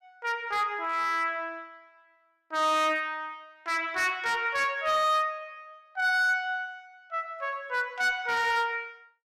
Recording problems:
distorted audio; hard clipping, signal-to-distortion ratio 10 dB

